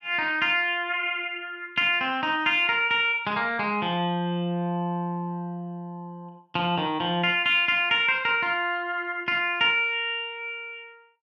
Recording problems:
none

